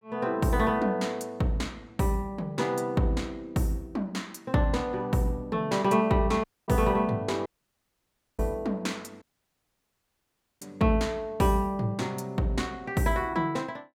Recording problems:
dropout; at 6.5 s, at 7.5 s for 1 s and at 9 s for 1.5 s

